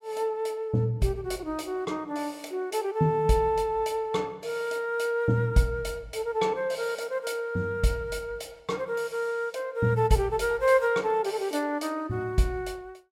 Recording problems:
none

